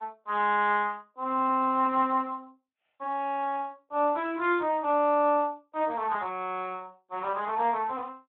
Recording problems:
telephone audio; 260 Hz to 3.7 kHz, Speex

